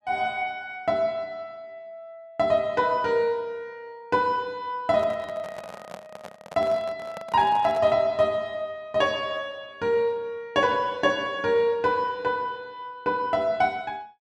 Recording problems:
microphone handling noise; from 5 to 8 s; peak -9 dB vs average level

